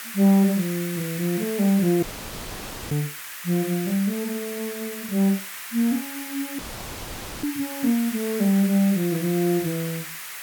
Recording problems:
hiss; SNR 9 dB
dropout; at 2 s for 1 s and at 6.5 s for 1 s

